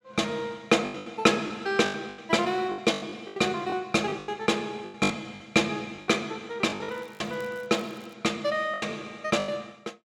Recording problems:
packet loss; 13% of the sound replaced, filled with the last packet
crackle; from 7 to 8 s; loose cable, SNR 29 dB

